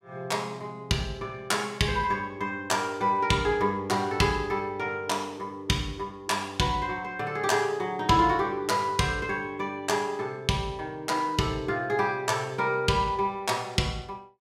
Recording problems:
none

